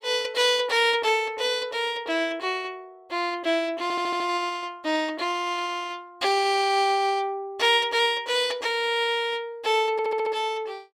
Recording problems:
audio stuttering; at 4 s and at 10 s

